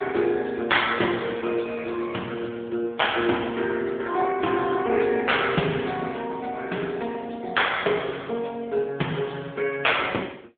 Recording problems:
telephone audio; 170 Hz to 3.5 kHz, AMR-NB

